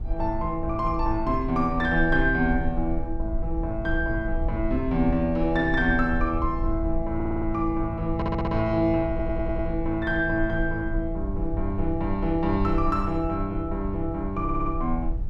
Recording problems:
low-frequency rumble; below 60 Hz, SNR 7 dB
audio stuttering; 4 times, first at 7 s

